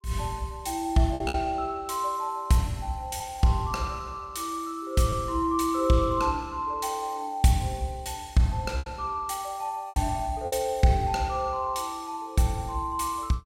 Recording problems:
packet loss; 3% of the sound replaced, filled with repeated pitch periods

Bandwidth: 16.5 kHz